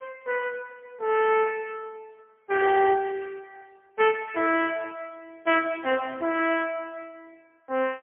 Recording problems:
phone line; 280 Hz to 3.3 kHz, AMR-NB, then MP3

